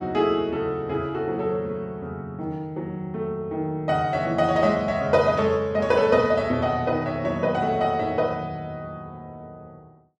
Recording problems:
none

